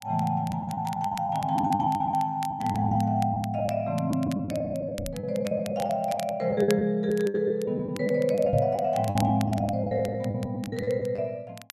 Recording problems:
crackling; vinyl, SNR 19 dB
packet loss; 15% of the sound replaced, filled with the last packet
microphone thump; at 5 s and at 8.5 s; peak +3 dB vs average level

